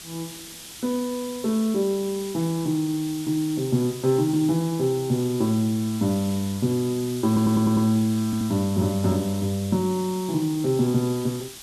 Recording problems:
hiss; SNR 14 dB
stutter; at 7.5 s and at 8.5 s

